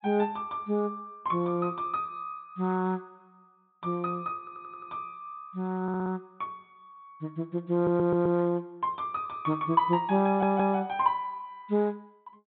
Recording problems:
treble missing; nothing above 4 kHz
audio stuttering; 4 times, first at 4.5 s

